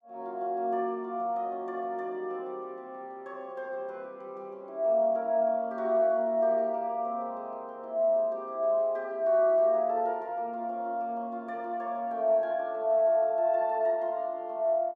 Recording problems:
none

